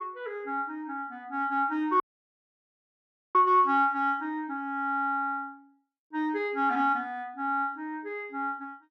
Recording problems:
audio cutting out; at 2 s for 1.5 s

